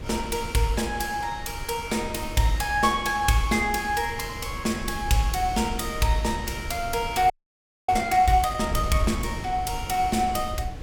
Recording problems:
wind on the microphone; below 130 Hz, SNR 12 dB
audio freezing; at 7.5 s for 0.5 s

